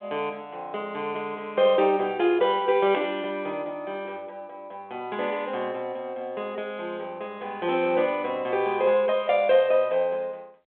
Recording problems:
telephone audio; 320 Hz to 3.5 kHz, G.726

